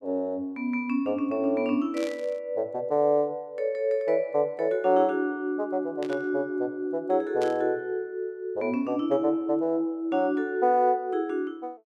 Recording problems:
burst of static; at 2 s, at 6 s and at 7.5 s; peak -9 dB vs average level

